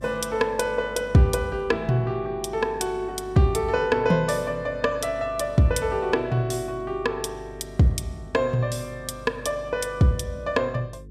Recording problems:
hum; 50 Hz, harmonics up to 450 Hz, SNR 20 dB

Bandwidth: 14.5 kHz